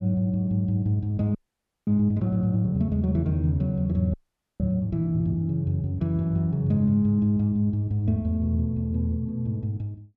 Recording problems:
audio freezing; at 1.5 s for 0.5 s and at 4 s

